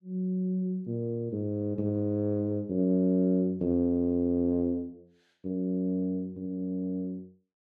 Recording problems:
none

